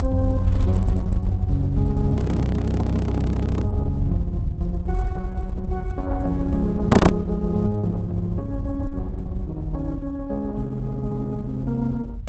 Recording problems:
lossy codec; Opus, log-spectral distance 2 dB, nothing above 8 kHz
low-frequency rumble; below 98 Hz, SNR 2 dB
audio freezing; at 2 s for 1.5 s and at 7 s

